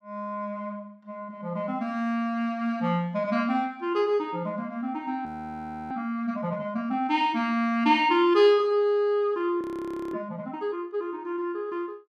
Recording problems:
frozen audio; at 5.5 s for 0.5 s and at 9.5 s for 0.5 s

